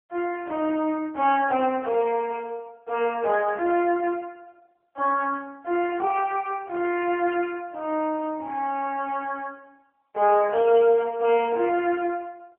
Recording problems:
phone line; 280 Hz to 3.2 kHz, AMR-NB

